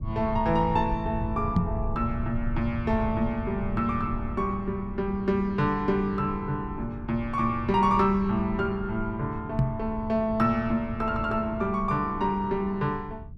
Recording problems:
low-frequency rumble; below 120 Hz, SNR 10 dB
knock on the microphone; at 1.5 s and at 9.5 s; peak +7 dB vs average level

